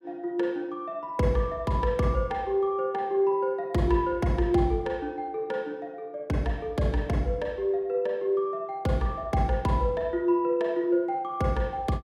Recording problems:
none

